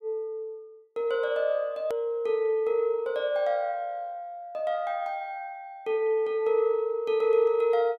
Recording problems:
hard cut with a click; at 2 s

